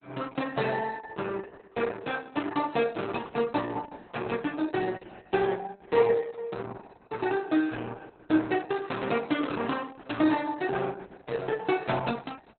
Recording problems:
codec artefacts; Opus, log-spectral distance 4 dB, nothing above 4 kHz

